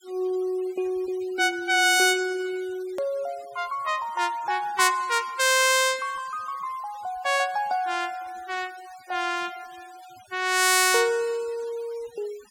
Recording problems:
denoising artefacts; signal-to-artefact ratio 23 dB
hard cut with a click; at 3 s

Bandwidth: 17 kHz